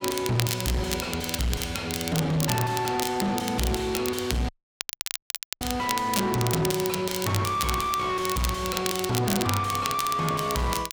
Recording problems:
distortion; soft clipping, signal-to-distortion ratio 6 dB
crackling; vinyl, SNR 6 dB
dropout; at 4.5 s for 1 s

